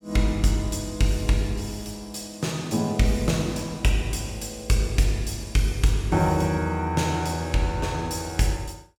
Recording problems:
none

